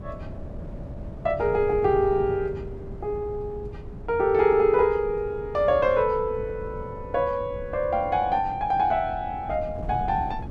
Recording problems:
wind on the microphone; below 200 Hz, SNR 14 dB

